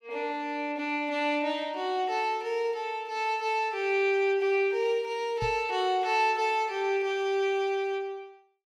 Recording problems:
microphone thump; at 5.5 s; peak -4 dB vs average level

